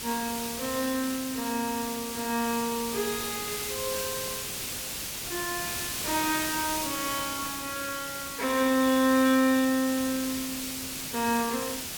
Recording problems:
background hiss; SNR 4 dB

